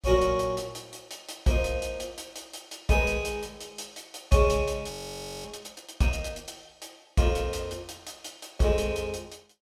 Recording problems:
audio freezing; at 5 s for 0.5 s

